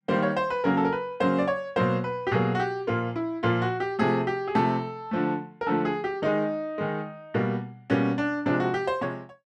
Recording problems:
none

